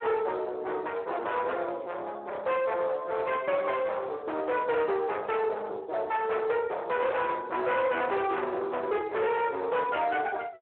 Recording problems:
phone line; 340 Hz to 3.1 kHz, Speex
distorted audio; soft clipping, signal-to-distortion ratio 7 dB

